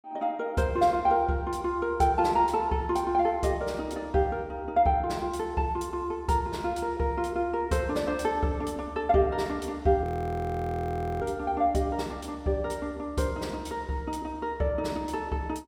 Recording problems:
audio freezing; at 10 s for 1 s

